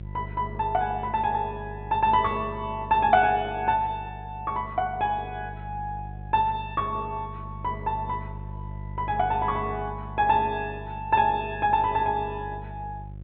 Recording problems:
low-pass filter; nothing above 4 kHz
hum; 50 Hz, harmonics up to 550 Hz, SNR 13 dB

